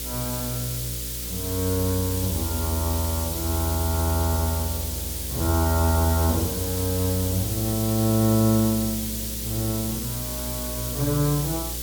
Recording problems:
electrical hum; 60 Hz, harmonics up to 540 Hz, SNR 11 dB
background hiss; slope +5 dB per octave, SNR 4 dB

